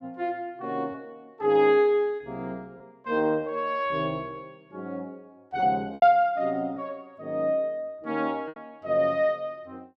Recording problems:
packet loss; 3% of the sound replaced, filled with repeated pitch periods

